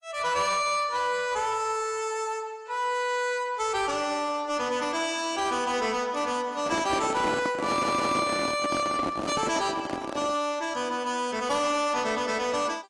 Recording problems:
lossy codec; AAC, log-spectral distance 3 dB, nothing above 10.7 kHz
distortion; soft clipping, signal-to-distortion ratio 12 dB
handling noise; from 6.5 to 10 s; peak +1 dB vs average level
stutter; at 7.5 s

